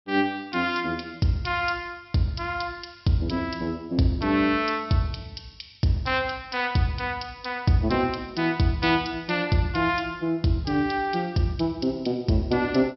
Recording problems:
low-pass filter; nothing above 5.7 kHz

